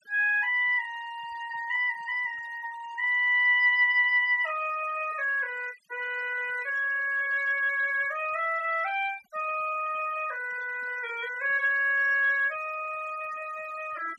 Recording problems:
noise reduction artefacts; signal-to-artefact ratio 22 dB

